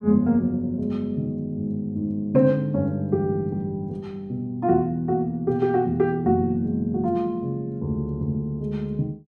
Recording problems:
none

